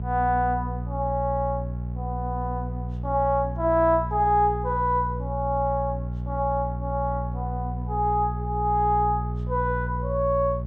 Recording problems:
electrical hum; 60 Hz, harmonics up to 420 Hz, SNR 5 dB

